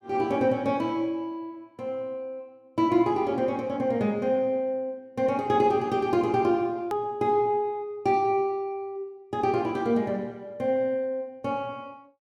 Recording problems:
edit click; at 7 s

